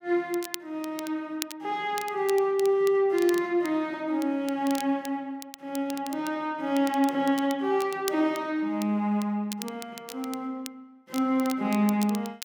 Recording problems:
crackling; vinyl, SNR 15 dB

